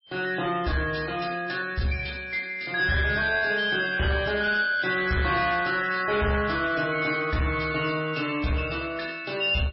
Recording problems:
lossy compression; MP3, log-spectral distance 6 dB, nothing above 5.3 kHz
distorted audio; soft clipping, signal-to-distortion ratio 11 dB

